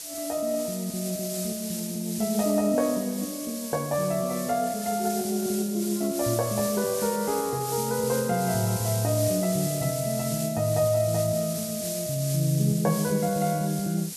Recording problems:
background hiss; SNR 7 dB

